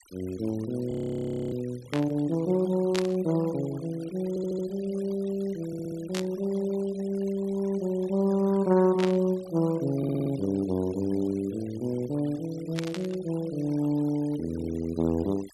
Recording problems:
noise reduction artefacts; signal-to-artefact ratio 22 dB
audio freezing; at 1 s for 0.5 s
burst of static; 5 times, first at 2 s; peak 0 dB vs average level
audio stuttering; at 4.5 s, at 5.5 s and at 10 s

